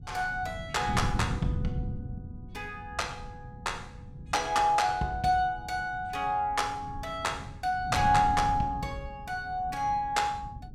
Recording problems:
wind noise; below 170 Hz, SNR 10 dB

